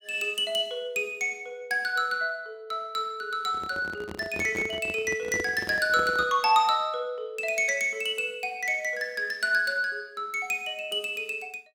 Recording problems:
microphone handling noise; from 3.5 to 6.5 s; peak -4 dB vs average level

